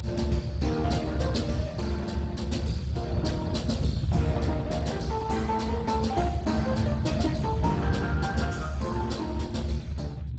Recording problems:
codec artefacts; Speex, log-spectral distance 3 dB, nothing above 7.8 kHz
low-frequency rumble; below 150 Hz, strongest tone 70 Hz, SNR 3 dB

